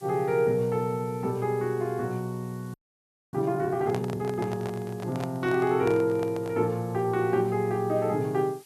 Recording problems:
background hiss; slope +1 dB per octave, SNR 27 dB
audio freezing; at 2.5 s for 0.5 s
handling noise; from 4 to 6.5 s; peak -3 dB vs average level

